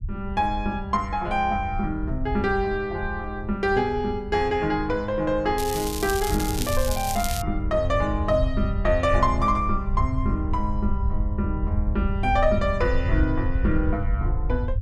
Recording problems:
rumble; below 82 Hz, SNR 4 dB
crackling; from 5.5 to 7.5 s; loose cable, SNR 7 dB

